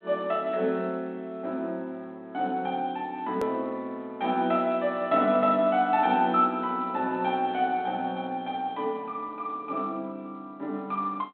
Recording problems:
phone line; 150 Hz to 4 kHz, G.726
edit click; at 3.5 s

